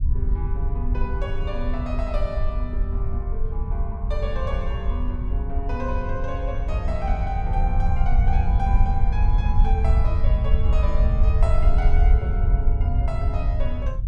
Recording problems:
low-frequency rumble; below 68 Hz, SNR -8 dB

